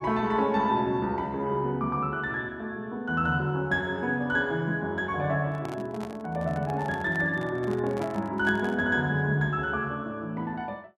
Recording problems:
handling noise; from 5.5 to 9 s; peak -6 dB vs average level

